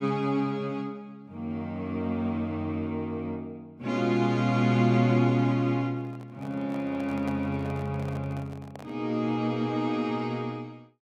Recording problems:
microphone handling noise; from 6 to 9 s; peak -7 dB vs average level

